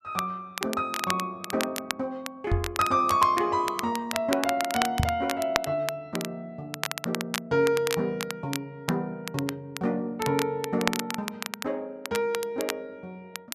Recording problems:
crackle; vinyl, SNR 6 dB
knock on the microphone; at 2.5 s and at 5 s; peak +7 dB vs average level

